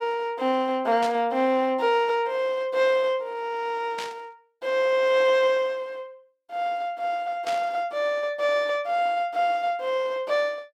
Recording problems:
static burst; at 1 s, at 4 s and at 7.5 s; peak -6 dB vs average level

